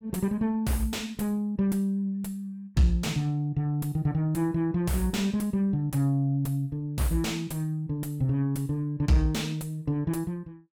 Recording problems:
distortion; soft clipping, signal-to-distortion ratio 7 dB

